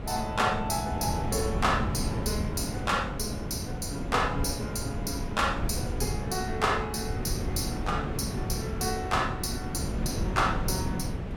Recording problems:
wind noise; below 260 Hz, SNR 3 dB

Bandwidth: 17.5 kHz